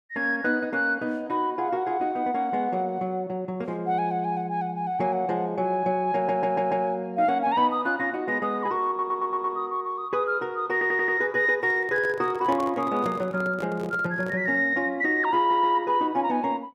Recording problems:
stutter; 4 times, first at 6 s
handling noise; from 12 to 15 s; peak -6 dB vs average level

